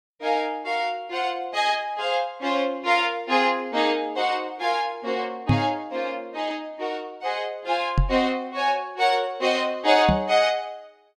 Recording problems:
knock on the microphone; at 5.5 s, at 8 s and at 10 s; peak +7 dB vs average level

